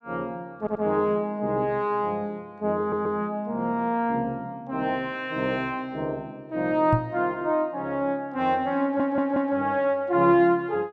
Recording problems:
stutter; at 0.5 s, at 3 s and at 9 s
knock on the microphone; at 7 s; peak +5 dB vs average level

